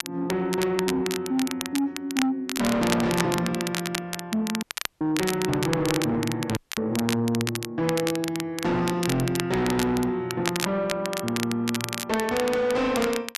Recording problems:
distortion; soft clipping, signal-to-distortion ratio 7 dB
crackling; vinyl, SNR 6 dB
dropout; at 4.5 s and at 6.5 s

